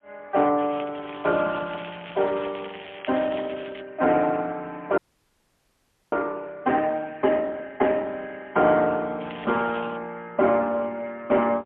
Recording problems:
telephone audio; 190 Hz to 4 kHz, AMR-NB, then MP3
crackling; from 0.5 to 4 s and at 9 s; loose cable, SNR 17 dB
frozen audio; at 5 s for 1 s

